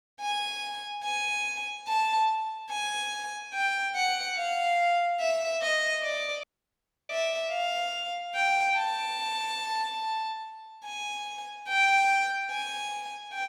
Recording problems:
dropout; at 6.5 s for 0.5 s

